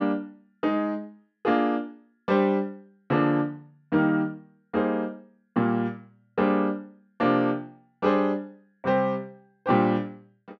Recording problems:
none

